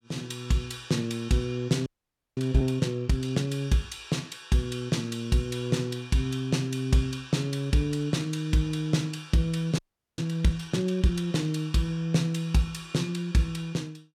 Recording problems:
frozen audio; at 2 s for 0.5 s and at 10 s

